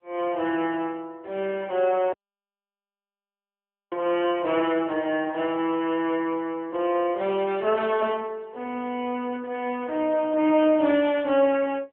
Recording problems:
telephone audio; 220 Hz to 3.5 kHz, AMR-NB
dropout; at 2 s for 2 s

